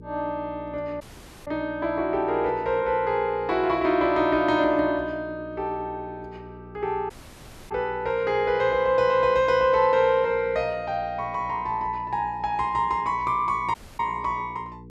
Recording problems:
hum; 60 Hz, harmonics up to 480 Hz, SNR 20 dB
dropout; at 1 s, at 7 s for 0.5 s and at 14 s

